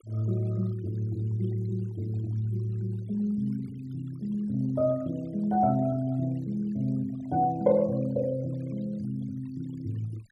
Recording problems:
noise reduction artefacts; signal-to-artefact ratio 25 dB

